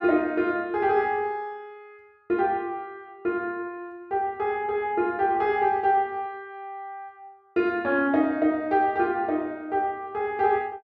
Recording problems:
none

